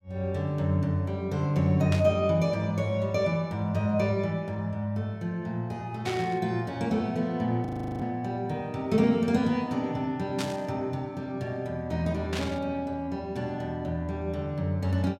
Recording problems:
burst of static; 4 times, first at 2 s; peak -1 dB vs average level
audio freezing; at 7.5 s

